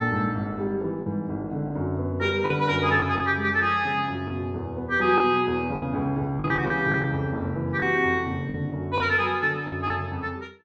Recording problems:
lost packets; 6% of the sound replaced, filled with the last packet

